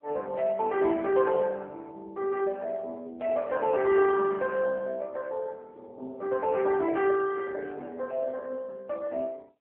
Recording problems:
telephone audio; 280 Hz to 2.6 kHz, AMR-NB

